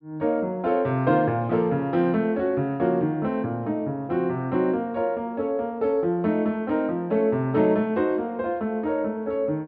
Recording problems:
treble cut off; nothing above 5.5 kHz

